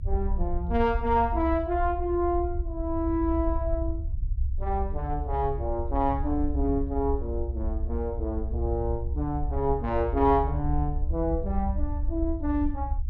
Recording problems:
rumble; below 68 Hz, SNR 3 dB

